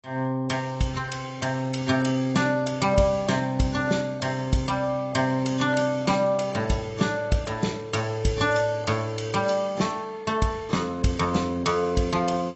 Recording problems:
lossy codec; AAC, log-spectral distance 4 dB, nothing above 7.8 kHz

